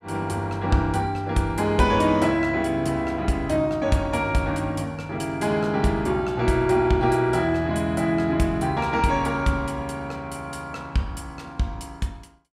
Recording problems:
none

